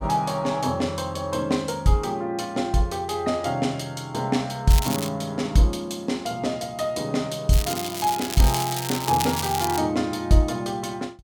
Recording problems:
crackling; at 4.5 s and from 7.5 to 10 s; loose cable, SNR 6 dB

